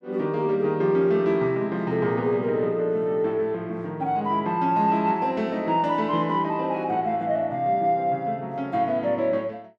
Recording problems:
none

